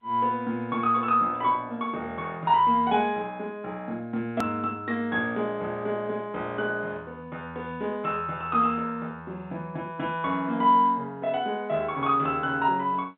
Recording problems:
telephone audio; 130 Hz to 3.8 kHz, G.711
edit click; at 4.5 s

